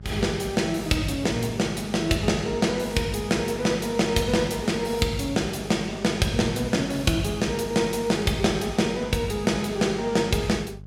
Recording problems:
electrical hum; 50 Hz, harmonics up to 450 Hz, SNR 17 dB

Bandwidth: 16 kHz